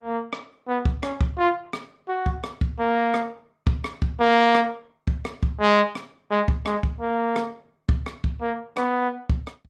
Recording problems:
codec artefacts; Opus, log-spectral distance 2 dB

